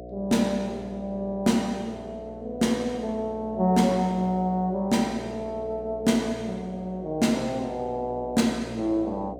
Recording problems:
hum; 60 Hz, harmonics up to 720 Hz, SNR 14 dB

